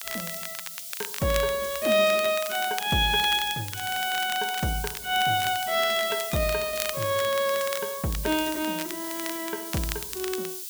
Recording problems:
hiss; SNR 8 dB
crackle; vinyl, SNR 12 dB

